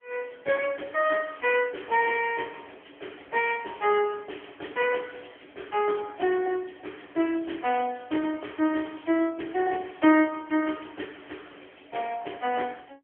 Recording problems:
phone line; 260 Hz to 3.2 kHz, AMR-NB

